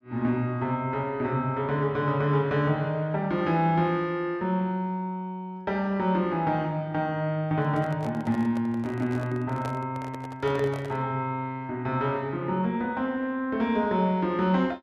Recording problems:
handling noise; from 7.5 to 11 s; peak -6 dB vs average level

